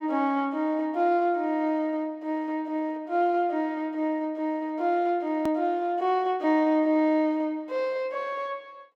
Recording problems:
click at an edit; at 5.5 s

